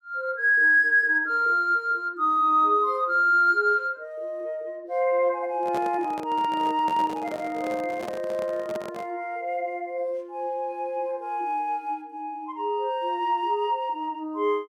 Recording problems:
microphone handling noise; from 5.5 to 9 s; peak -7 dB vs average level

